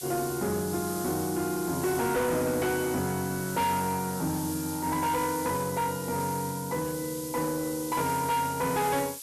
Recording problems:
distortion; soft clipping, signal-to-distortion ratio 11 dB
hiss; slope +5 dB per octave, SNR 8 dB

